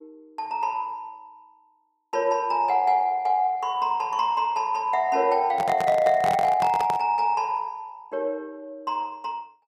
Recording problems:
handling noise; from 5.5 to 7 s; peak -3 dB vs average level

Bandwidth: 14.5 kHz